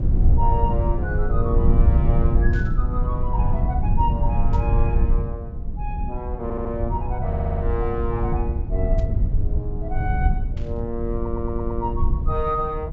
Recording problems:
treble missing; nothing above 8 kHz
hum; 50 Hz, harmonics up to 450 Hz, SNR 15 dB
rumble; below 86 Hz, SNR -5 dB
burst of static; 4 times, first at 2.5 s; peak -14 dB vs average level
audio stuttering; at 6.5 s, at 7.5 s and at 11 s

